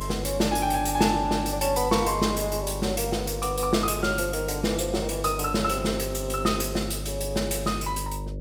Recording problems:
hum; 50 Hz, harmonics up to 600 Hz, SNR 9 dB

